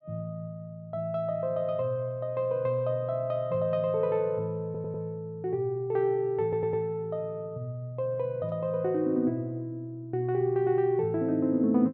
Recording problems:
stutter; at 4.5 s and at 6.5 s

